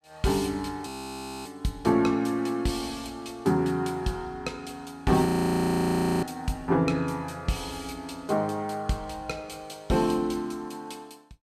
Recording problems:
frozen audio; at 1 s for 0.5 s and at 5.5 s for 1 s

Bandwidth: 14.5 kHz